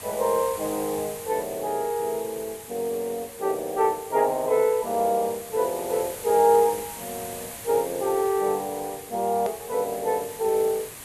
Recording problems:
hiss; slope -2 dB per octave, SNR 13 dB
hard cut with a click; at 9.5 s

